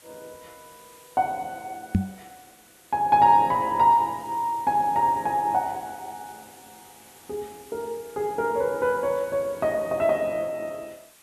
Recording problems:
hiss; slope -1 dB per octave, SNR 25 dB
microphone thump; at 2 s; peak +6 dB vs average level

